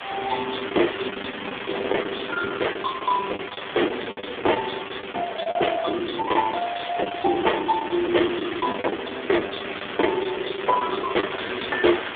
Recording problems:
telephone audio; 260 Hz to 3.6 kHz, AMR-NB
distorted audio; hard clipping, uneven, signal-to-distortion ratio 11 dB
hiss; SNR 7 dB
packet loss; 18% of the sound replaced, filled with the last packet

